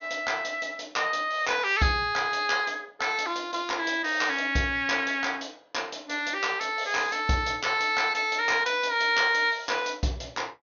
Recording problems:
treble missing; nothing above 6.6 kHz

